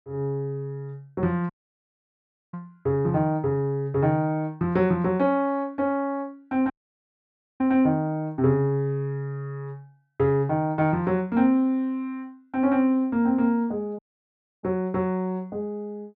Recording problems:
audio cutting out; at 1.5 s for 1 s, at 6.5 s for 1 s and at 14 s for 0.5 s

